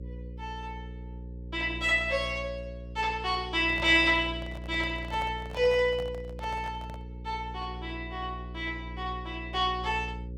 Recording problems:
electrical hum; 60 Hz, harmonics up to 540 Hz, SNR 12 dB
microphone handling noise; from 3.5 to 7 s; peak -9 dB vs average level

